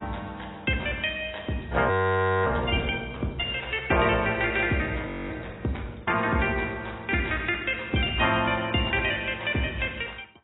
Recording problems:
lossy codec; AAC, log-spectral distance 6 dB, nothing above 3.2 kHz
frozen audio; at 2 s for 0.5 s and at 5 s

